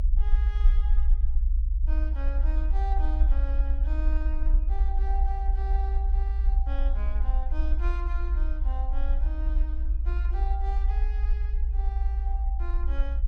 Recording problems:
low-frequency rumble; below 56 Hz, SNR -14 dB

